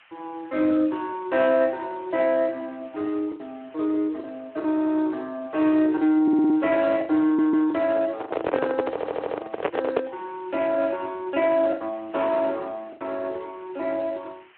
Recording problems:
telephone audio; 280 Hz to 3.6 kHz, Speex
background hiss; SNR 28 dB
lost packets; 5% of the sound replaced, filled with the last packet
stutter; 4 times, first at 4.5 s
microphone handling noise; from 8 to 10 s; peak +4 dB vs average level

